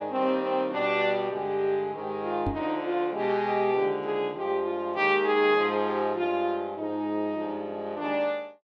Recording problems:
microphone thump; at 2.5 s; peak 0 dB vs average level

